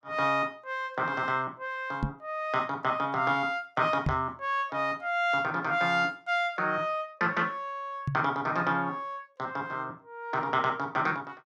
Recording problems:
knock on the microphone; at 2 s, at 4 s and at 8 s; peak +4 dB vs average level

